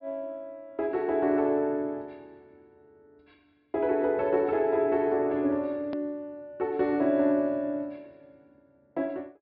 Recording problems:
treble cut off; nothing above 5.5 kHz
edit click; at 6 s

